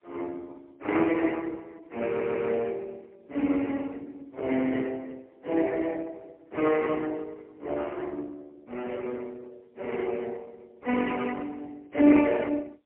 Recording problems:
telephone audio; 260 Hz to 3.2 kHz, AMR-NB, then MP3
stutter; at 2 s

